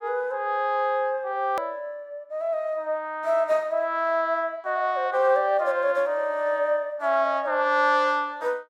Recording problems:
click at an edit; at 1.5 s

